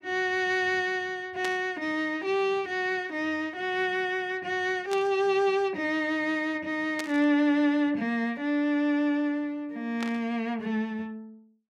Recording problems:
burst of static; 4 times, first at 1.5 s; peak -4 dB vs average level

